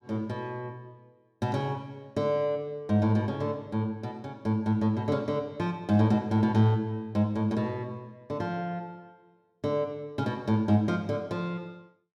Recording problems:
none

